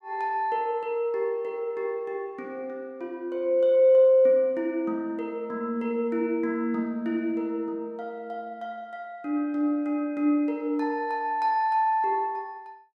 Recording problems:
none

